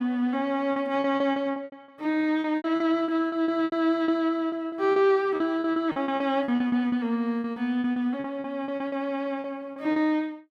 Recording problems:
lost packets; 17% of the sound replaced, filled with repeated pitch periods

